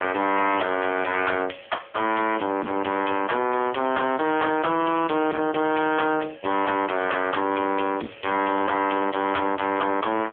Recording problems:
phone line; 190 Hz to 3.4 kHz, AMR-NB
distorted audio; hard clipping, uneven, signal-to-distortion ratio 7 dB

